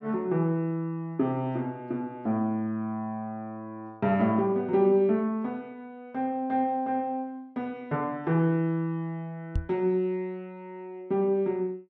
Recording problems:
microphone thump; at 9.5 s; peak +3 dB vs average level

